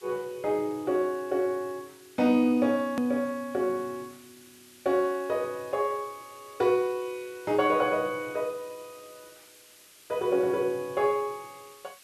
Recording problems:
background hiss; slope +2 dB per octave, SNR 24 dB
hard cut with a click; at 3 s

